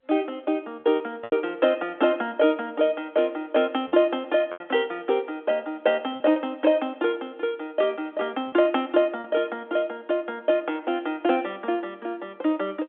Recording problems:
telephone audio; 220 Hz to 3.4 kHz, G.711
lost packets; 3% of the sound replaced, filled with repeated pitch periods

